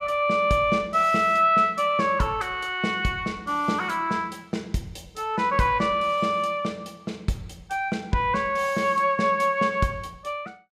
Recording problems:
none

